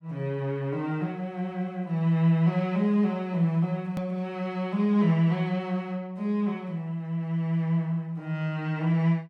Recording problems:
click at an edit; at 4 s

